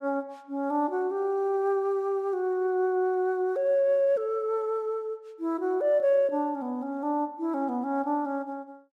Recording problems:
none

